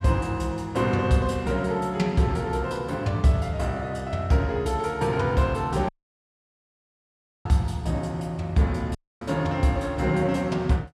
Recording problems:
dropout; at 6 s for 1.5 s and at 9 s

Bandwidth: 15 kHz